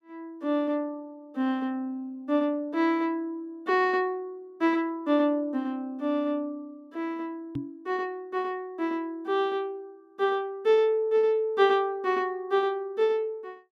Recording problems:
microphone thump; at 7.5 s; peak -2 dB vs average level

